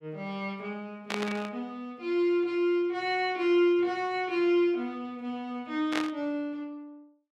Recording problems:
static burst; at 1 s and at 6 s; peak +2 dB vs average level

